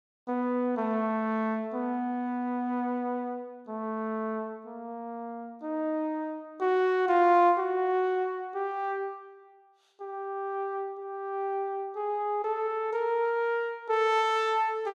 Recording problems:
none

